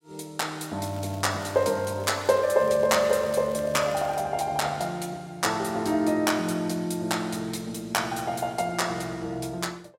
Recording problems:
crackle; from 1 to 4 s; loose cable, SNR 23 dB

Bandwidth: 16 kHz